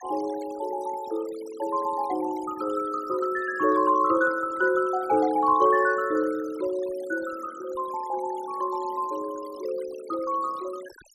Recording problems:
denoising artefacts; signal-to-artefact ratio 20 dB

